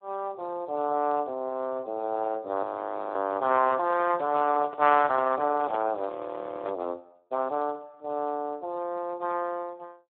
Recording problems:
telephone audio; 220 Hz to 3.2 kHz, Speex
frozen audio; at 2.5 s for 0.5 s and at 6 s for 0.5 s
handling noise; from 3.5 to 7 s; peak -5 dB vs average level

